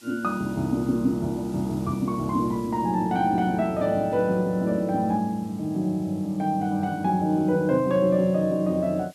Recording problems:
background hiss; SNR 27 dB

